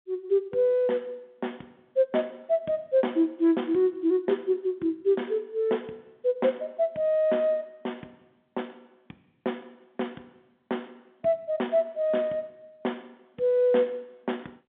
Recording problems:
telephone audio; 190 Hz to 3.6 kHz, G.711

